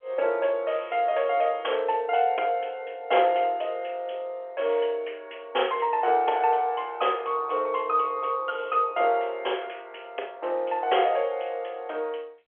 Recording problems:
telephone audio; 340 Hz to 3.4 kHz, G.711

